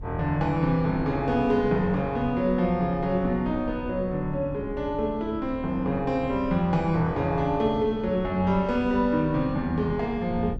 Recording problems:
wind noise; below 140 Hz, SNR 14 dB

